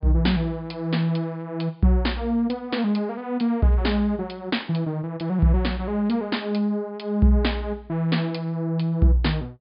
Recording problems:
treble missing; nothing above 5.1 kHz

